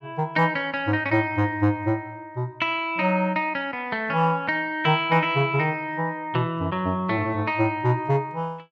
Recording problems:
none

